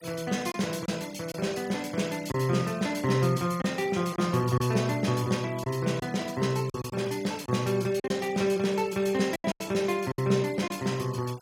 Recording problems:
denoising artefacts; signal-to-artefact ratio 19 dB
packet loss; 5% of the sound replaced, filled with silence

